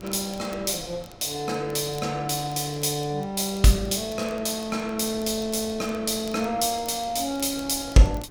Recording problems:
wind on the microphone; below 500 Hz, SNR 22 dB
crackle; vinyl, SNR 24 dB

